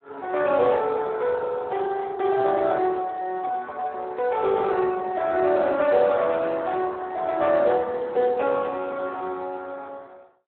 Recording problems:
telephone audio; 320 Hz to 3.6 kHz, Speex

